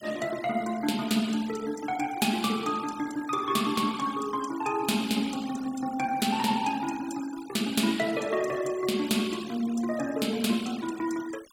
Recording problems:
noise reduction artefacts; signal-to-artefact ratio 17 dB

